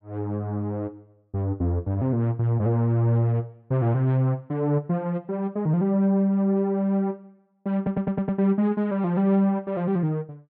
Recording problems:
audio stuttering; at 8 s

